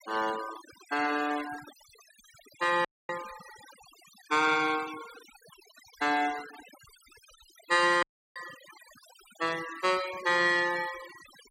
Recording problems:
noise reduction artefacts; signal-to-artefact ratio 16 dB
audio cutting out; at 3 s and at 8 s

